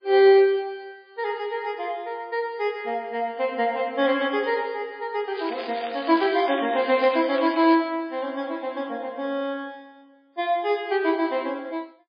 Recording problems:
lossy codec; MP3, log-spectral distance 3 dB, nothing above 4.2 kHz
crackle; from 5.5 to 8 s; loose cable, SNR 14 dB

